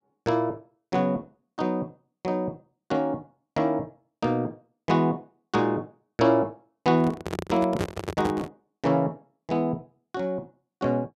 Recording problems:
handling noise; from 7 to 8.5 s; peak +3 dB vs average level

